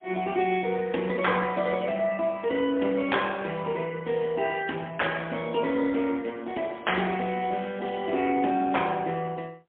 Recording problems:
phone line; 220 Hz to 3.4 kHz, AMR-NB, then MP3

